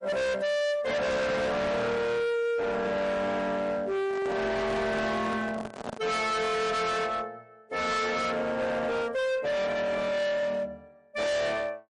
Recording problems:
lossy codec; MP3, log-spectral distance 2 dB, nothing above 10.1 kHz
distortion; hard clipping, signal-to-distortion ratio 6 dB
handling noise; from 4 to 6 s; peak -4 dB vs average level

